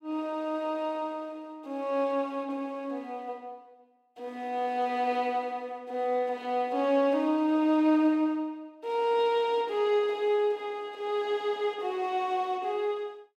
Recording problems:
none

